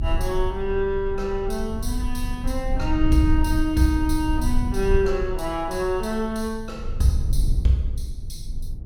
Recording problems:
low-frequency rumble; below 70 Hz, strongest tone 22 Hz, SNR 4 dB

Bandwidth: 16.5 kHz